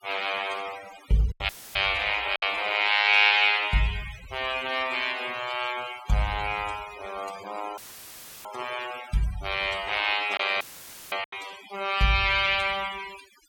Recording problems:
denoising artefacts; signal-to-artefact ratio 17 dB
packet loss; 2% of the sound replaced, filled with silence
dropout; at 1.5 s, at 8 s for 0.5 s and at 11 s for 0.5 s; filled with static

